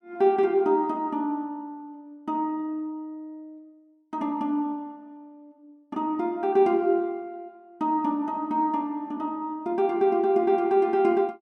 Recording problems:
none

